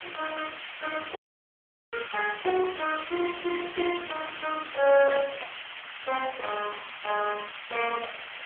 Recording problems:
telephone audio; 340 Hz to 2.6 kHz, AMR-NB
background hiss; SNR 9 dB
dropout; at 1 s for 1 s

